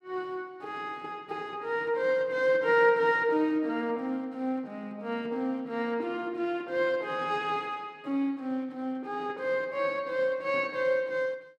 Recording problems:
none

